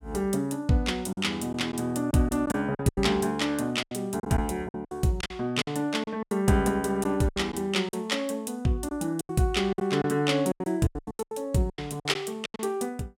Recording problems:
lost packets; 13% of the sound replaced, filled with silence

